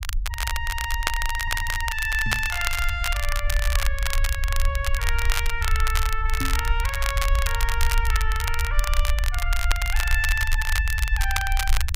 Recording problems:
rumble; below 58 Hz, SNR 0 dB
crackling; vinyl, SNR 2 dB
stutter; at 1.5 s
knock on the microphone; at 2.5 s and at 6.5 s; peak +3 dB vs average level

